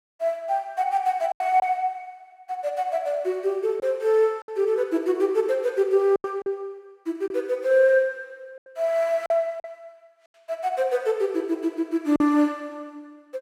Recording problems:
packet loss; 4% of the sound replaced, filled with silence

